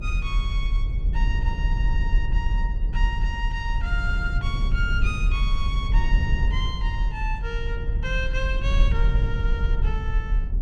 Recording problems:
rumble; below 58 Hz, SNR -7 dB

